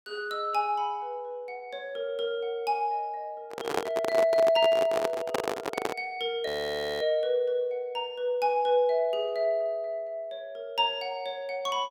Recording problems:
handling noise; from 3.5 to 6 s; peak +4 dB vs average level
frozen audio; at 6.5 s for 0.5 s

